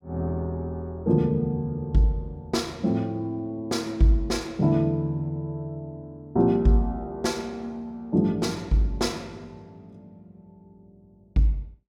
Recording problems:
none

